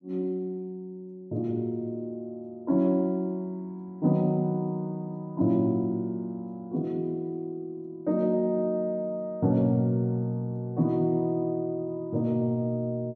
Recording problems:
none

